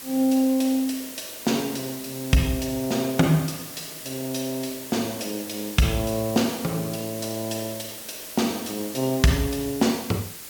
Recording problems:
background hiss; SNR 10 dB

